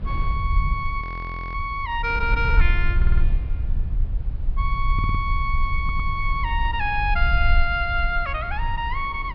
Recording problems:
low-pass filter; nothing above 5.5 kHz
rumble; below 60 Hz, SNR 1 dB
wind noise; below 440 Hz, SNR 18 dB
audio freezing; at 1 s for 0.5 s
audio stuttering; at 3 s, at 5 s and at 6 s

